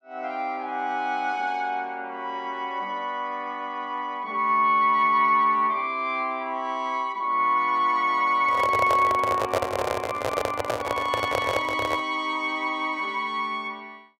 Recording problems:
handling noise; from 8.5 to 12 s; peak +3 dB vs average level

